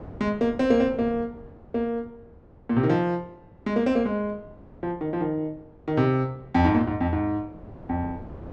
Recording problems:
wind on the microphone; below 420 Hz, SNR 21 dB

